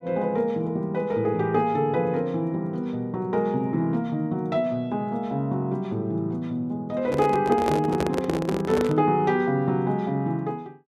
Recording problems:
handling noise; from 7 to 9 s; peak +2 dB vs average level

